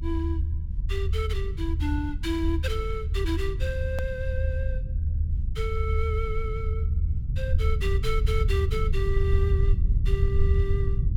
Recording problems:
rumble; below 78 Hz, SNR -6 dB
edit click; at 4 s

